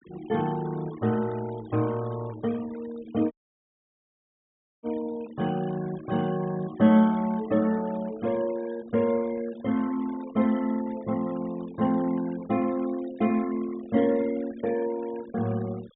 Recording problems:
treble missing; nothing above 4 kHz
noise reduction artefacts; signal-to-artefact ratio 21 dB
dropout; at 3.5 s for 1.5 s

